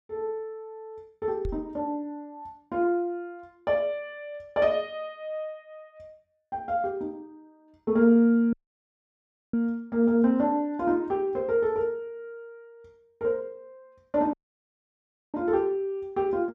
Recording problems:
knock on the microphone; at 1.5 s; peak -4 dB vs average level
dropout; at 8.5 s for 1 s and at 14 s for 1 s

